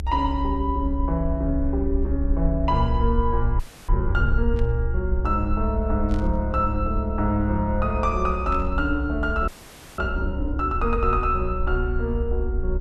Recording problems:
electrical hum; 50 Hz, harmonics up to 900 Hz, SNR 21 dB
low-frequency rumble; below 68 Hz, SNR 2 dB
audio freezing; at 3.5 s and at 9.5 s for 0.5 s
static burst; at 4.5 s, at 6 s and at 8.5 s; peak -14 dB vs average level

